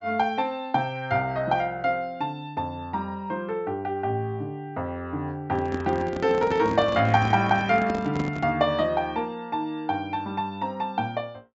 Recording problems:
low-pass filter; nothing above 7.6 kHz
handling noise; from 5.5 to 8.5 s; peak 0 dB vs average level

